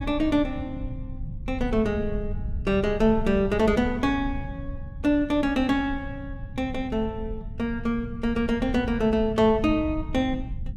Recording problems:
rumble; below 110 Hz, SNR 11 dB

